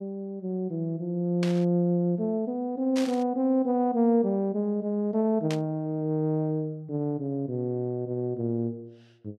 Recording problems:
burst of static; at 1.5 s, at 3 s and at 5.5 s; peak -4 dB vs average level

